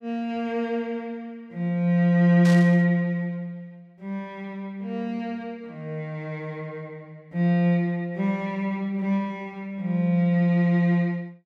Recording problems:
burst of static; at 2.5 s; peak -7 dB vs average level

